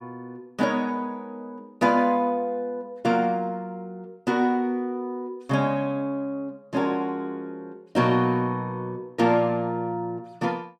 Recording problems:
none

